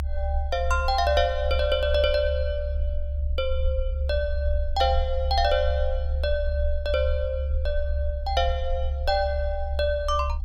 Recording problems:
rumble; below 70 Hz, strongest tone 70 Hz, SNR 2 dB

